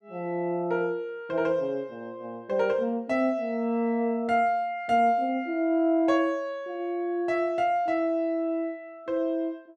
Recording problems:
none

